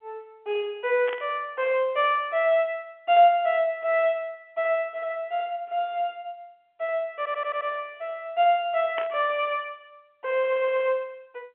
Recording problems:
phone line; 300 Hz to 3.4 kHz, G.711
static burst; at 1 s and at 9 s; peak -4 dB vs average level
stutter; at 7 s and at 10 s

